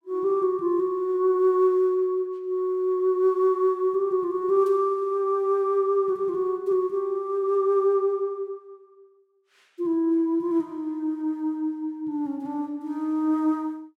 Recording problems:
none

